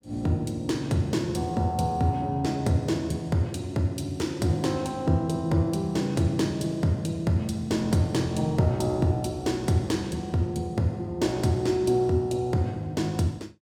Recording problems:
none

